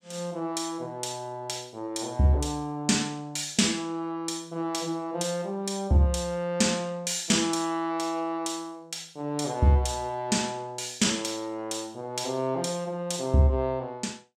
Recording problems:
none

